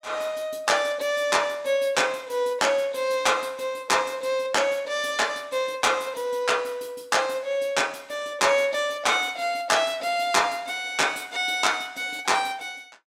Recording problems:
none

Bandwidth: 16 kHz